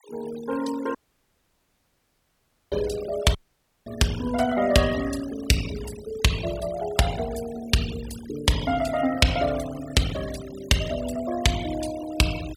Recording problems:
denoising artefacts; signal-to-artefact ratio 14 dB
audio cutting out; at 1 s for 2 s and at 3.5 s for 0.5 s

